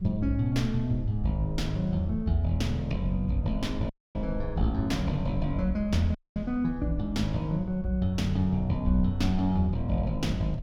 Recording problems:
low-frequency rumble; below 58 Hz, SNR 12 dB
audio cutting out; at 4 s and at 6 s

